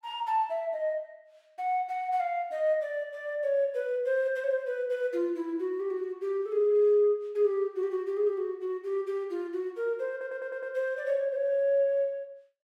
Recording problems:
stutter; at 10 s

